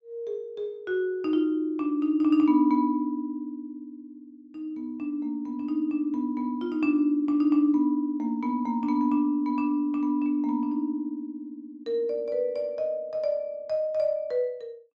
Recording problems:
treble cut off; nothing above 8 kHz

